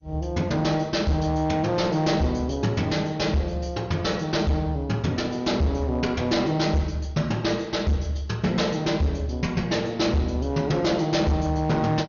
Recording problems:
lossy codec; MP2, log-spectral distance 2 dB, nothing above 6.7 kHz
distorted audio; hard clipping, signal-to-distortion ratio 11 dB

